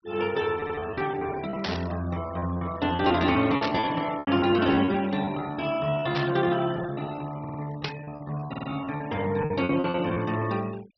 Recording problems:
treble missing; nothing above 5.8 kHz
denoising artefacts; signal-to-artefact ratio 19 dB
lost packets; 16% of the sound replaced, filled with repeated pitch periods
audio stuttering; at 0.5 s, at 7.5 s and at 8.5 s
burst of static; 4 times, first at 1.5 s; peak 0 dB vs average level

